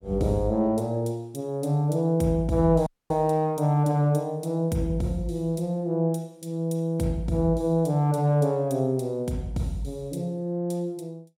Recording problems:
audio cutting out; at 3 s

